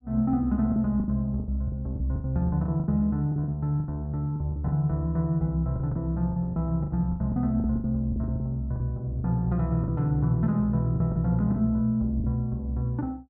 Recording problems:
lost packets; 13% of the sound replaced, filled with the last packet

